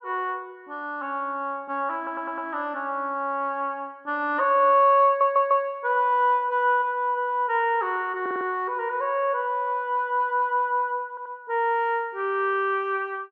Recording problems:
audio stuttering; 4 times, first at 2 s

